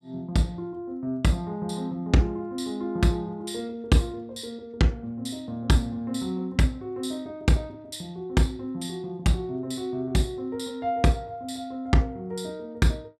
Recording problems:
none

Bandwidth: 15 kHz